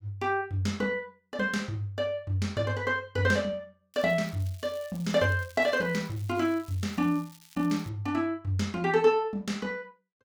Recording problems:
crackling; from 4 to 8 s; loose cable, SNR 24 dB

